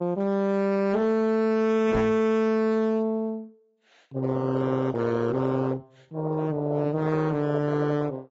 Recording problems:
codec artefacts; AAC, then AAC, log-spectral distance 2 dB, nothing above 7.6 kHz
distortion; hard clipping, signal-to-distortion ratio 11 dB
microphone bump; at 2 s; peak -2 dB vs average level

